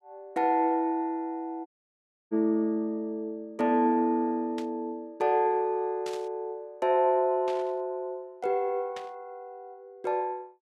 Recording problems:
audio cutting out; at 1.5 s for 0.5 s
static burst; 4 times, first at 4.5 s; peak -10 dB vs average level

